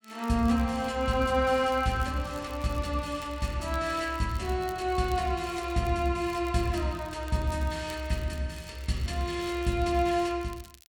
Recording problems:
crackle; vinyl, SNR 23 dB

